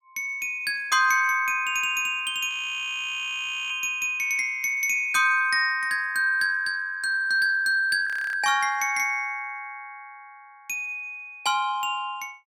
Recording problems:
frozen audio; at 2.5 s for 1 s and at 8 s

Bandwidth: 18.5 kHz